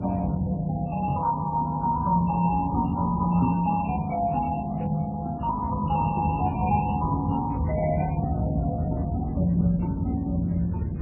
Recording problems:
codec artefacts; Speex, then MP3, log-spectral distance 2 dB, nothing above 2.6 kHz
low-frequency rumble; below 200 Hz, SNR 5 dB
microphone bump; at 1 s and at 3.5 s; peak +5 dB vs average level

